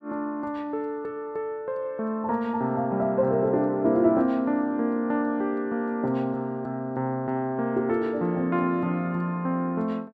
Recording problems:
none

